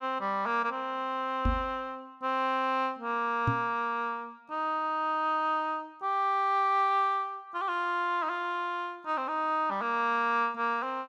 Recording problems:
microphone thump; at 1.5 s and at 3.5 s; peak +4 dB vs average level

